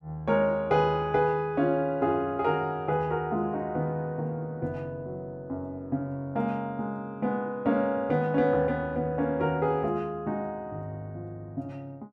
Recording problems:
none

